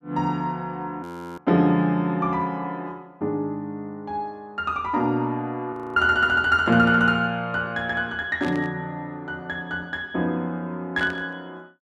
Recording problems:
audio freezing; at 1 s and at 5.5 s
burst of static; at 8.5 s and at 11 s; peak -9 dB vs average level

